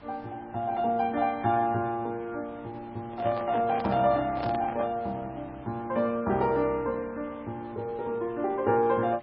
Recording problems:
lossy codec; MP3, log-spectral distance 2 dB
hiss; SNR 22 dB
handling noise; from 3 to 5 s; peak -3 dB vs average level

